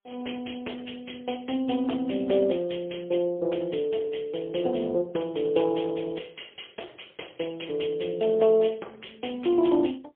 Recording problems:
phone line; 280 Hz to 3.4 kHz, AMR-NB, then MP3

